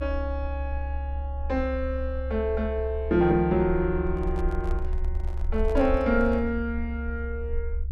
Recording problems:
rumble; below 70 Hz, SNR 5 dB
microphone handling noise; from 4 to 6.5 s; peak -9 dB vs average level

